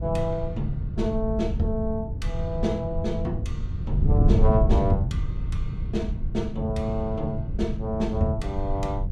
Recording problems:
low-frequency rumble; below 90 Hz, SNR 11 dB
wind on the microphone; below 110 Hz, SNR 0 dB

